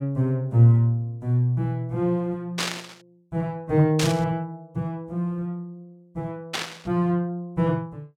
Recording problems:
static burst; at 2.5 s, at 4 s and at 6.5 s; peak +2 dB vs average level

